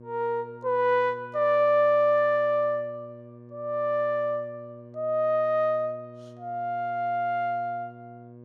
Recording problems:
hum; 60 Hz, harmonics up to 1.1 kHz, SNR 21 dB

